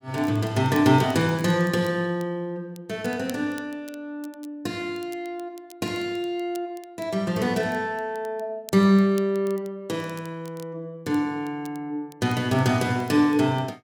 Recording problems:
crackle; vinyl, SNR 25 dB

